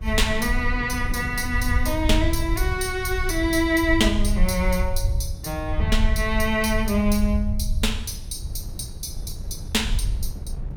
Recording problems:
rumble; below 72 Hz, SNR 4 dB
wind noise; below 150 Hz, SNR 14 dB

